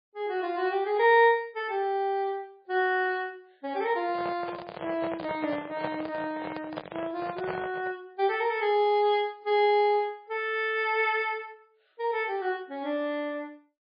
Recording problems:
lossy codec; MP3, log-spectral distance 2 dB, nothing above 4.1 kHz
handling noise; from 4 to 8 s; peak -2 dB vs average level

